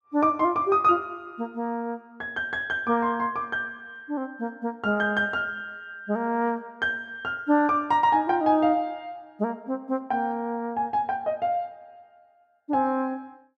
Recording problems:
none

